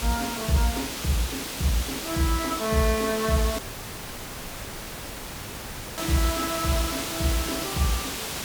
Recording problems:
mains hum; 50 Hz, harmonics up to 500 Hz, SNR 26 dB
hiss; slope -1 dB per octave, SNR 3 dB
dropout; at 3.5 s for 2.5 s

